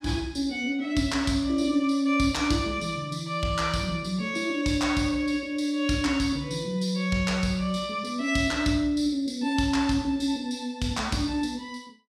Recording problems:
none

